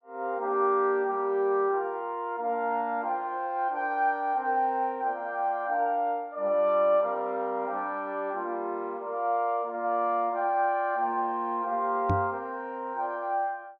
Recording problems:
knock on the microphone; at 12 s; peak +3 dB vs average level

